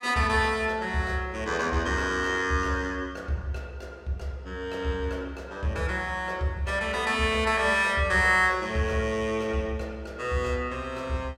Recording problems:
none

